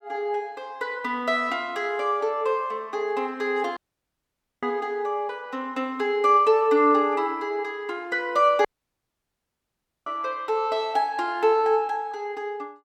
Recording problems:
audio cutting out; at 4 s for 1 s and at 8.5 s for 1.5 s

